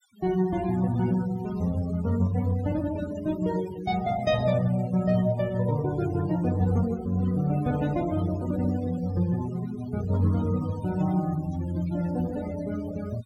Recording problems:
noise reduction artefacts; signal-to-artefact ratio 17 dB

